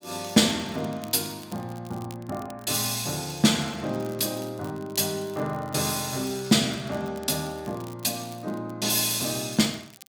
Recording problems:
crackle; vinyl, SNR 23 dB

